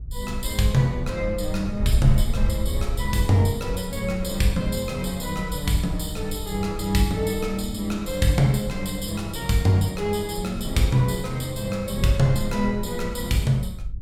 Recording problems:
wind on the microphone; below 70 Hz, SNR 9 dB

